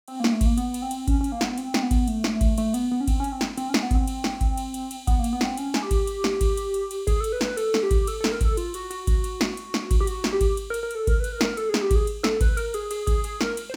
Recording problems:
none

